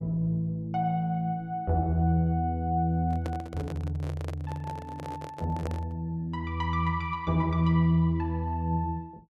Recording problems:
microphone handling noise; from 3 to 6 s; peak -3 dB vs average level

